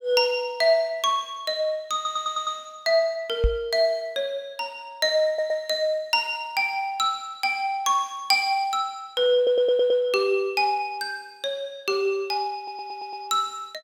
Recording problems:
stutter; 4 times, first at 2 s
microphone bump; at 3.5 s; peak +4 dB vs average level

